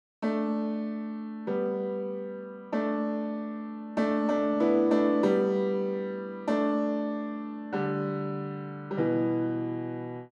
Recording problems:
none

